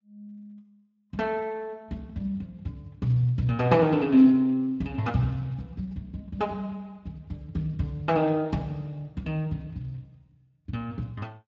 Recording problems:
codec artefacts; Speex, log-spectral distance 2 dB

